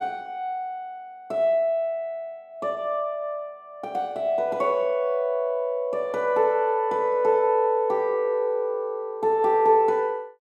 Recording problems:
none

